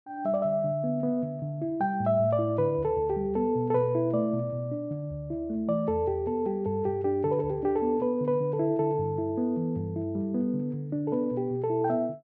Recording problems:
none

